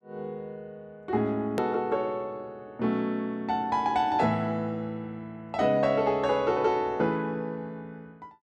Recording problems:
edit click; at 1.5 s

